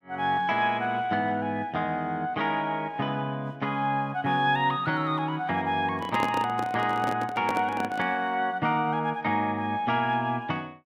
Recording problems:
microphone handling noise; from 6 to 8 s; peak +1 dB vs average level

